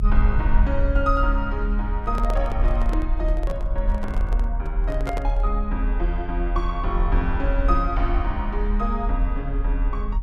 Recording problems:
low-frequency rumble; below 48 Hz, strongest tone 38 Hz, SNR -3 dB
microphone handling noise; from 2 to 5.5 s; peak +1 dB vs average level

